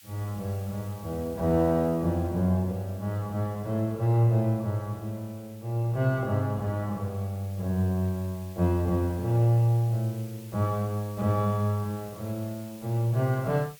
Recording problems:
background hiss; SNR 23 dB

